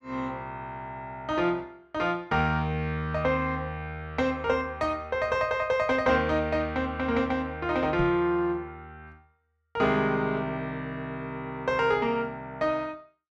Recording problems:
knock on the microphone; at 8 s; peak -1 dB vs average level

